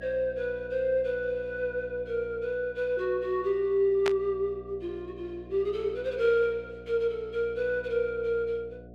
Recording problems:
electrical hum; 60 Hz, harmonics up to 720 Hz, SNR 19 dB
burst of static; at 4 s; peak +2 dB vs average level

